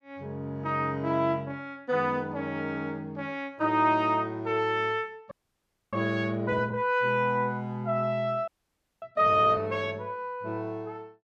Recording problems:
frozen audio; at 5.5 s for 0.5 s and at 8.5 s for 0.5 s

